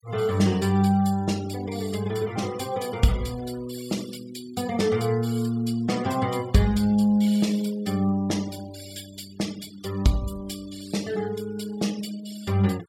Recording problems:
noise reduction artefacts; signal-to-artefact ratio 18 dB

